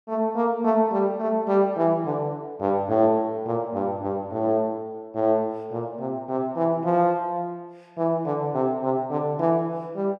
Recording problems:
none

